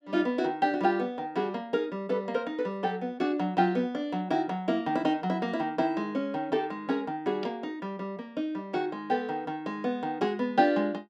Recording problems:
none

